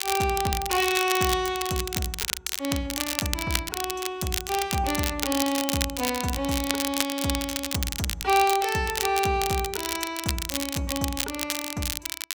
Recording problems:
crackle; vinyl, SNR 2 dB

